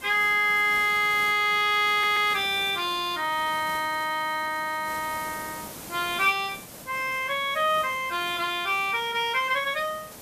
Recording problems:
hiss; slope -4 dB per octave, SNR 17 dB
stutter; at 2 s

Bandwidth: 14.5 kHz